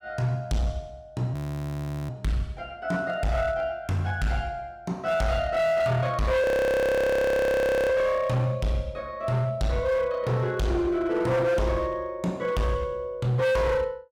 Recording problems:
distortion; hard clipping, signal-to-distortion ratio 8 dB
frozen audio; at 1.5 s for 0.5 s and at 6.5 s for 1.5 s

